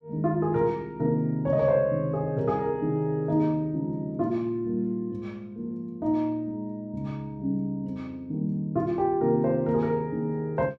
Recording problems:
none

